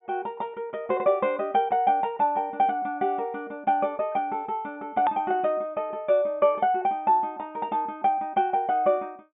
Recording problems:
low-pass filter; nothing above 3.6 kHz
edit click; at 5 s

